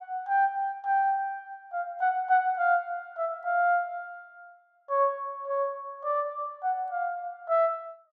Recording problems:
none

